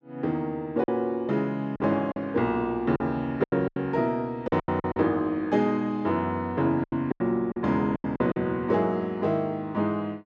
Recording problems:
lost packets; 9% of the sound replaced, filled with silence

